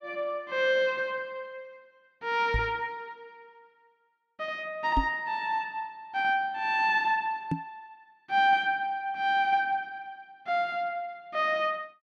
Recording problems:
microphone thump; at 2.5 s, at 5 s and at 7.5 s; peak +2 dB vs average level

